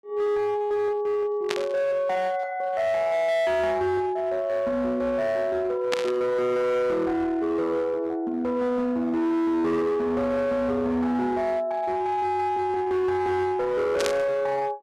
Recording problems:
distortion; hard clipping, signal-to-distortion ratio 10 dB
static burst; at 1.5 s, at 6 s and at 14 s; peak +1 dB vs average level

